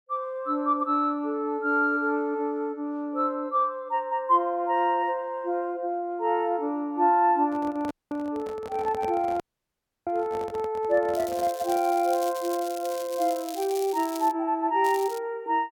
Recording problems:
microphone handling noise; from 7.5 to 12 s; peak -7 dB vs average level
audio cutting out; at 8 s and at 9.5 s for 0.5 s
crackling; from 11 to 14 s and at 15 s; loose cable, SNR 16 dB

